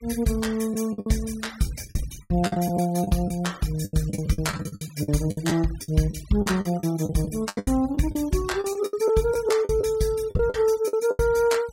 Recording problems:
noise reduction artefacts; signal-to-artefact ratio 20 dB
packet loss; 15% of the sound replaced, filled with the last packet

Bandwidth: 16 kHz